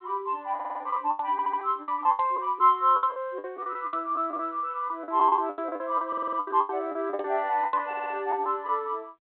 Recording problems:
phone line; 220 Hz to 3.5 kHz, G.726
packet loss; 16% of the sound replaced, filled with the last packet
audio stuttering; 4 times, first at 0.5 s

